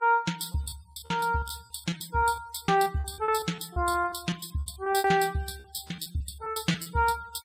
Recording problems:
noise reduction artefacts; signal-to-artefact ratio 22 dB
packet loss; 16% of the sound replaced, filled with repeated pitch periods

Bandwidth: 16 kHz